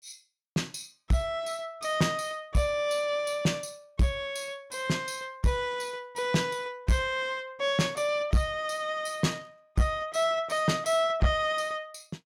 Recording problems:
distorted audio; soft clipping, signal-to-distortion ratio 11 dB

